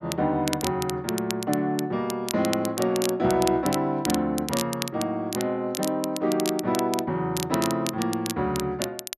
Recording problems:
crackling; vinyl, SNR 8 dB

